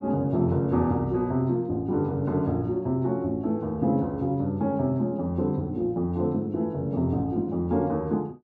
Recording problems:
none

